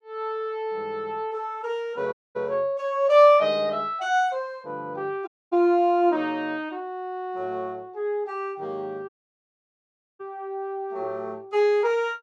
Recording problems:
audio cutting out; at 2 s, at 5.5 s and at 9 s for 1 s

